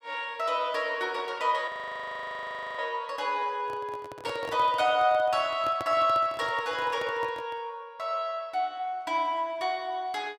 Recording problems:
frozen audio; at 1.5 s for 1 s
microphone handling noise; from 3.5 to 7.5 s; peak -5 dB vs average level

